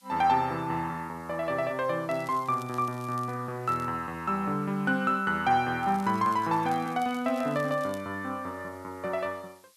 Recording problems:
background hiss; slope +4 dB per octave, SNR 29 dB
crackle; from 2 to 3.5 s, at 3.5 s and from 6 to 8 s; loose cable, SNR 24 dB

